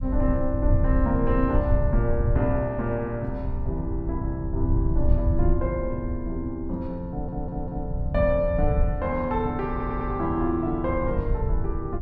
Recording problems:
low-frequency rumble; below 92 Hz, SNR 1 dB
audio stuttering; at 7 s and at 9.5 s

